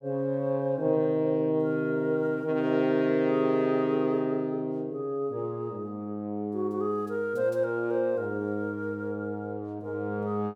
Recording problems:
none

